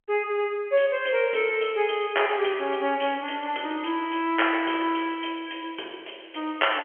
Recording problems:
phone line; 300 Hz to 3.3 kHz, G.711

